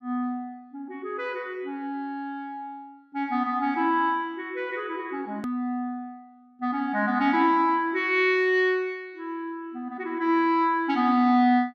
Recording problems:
edit click; at 5.5 s

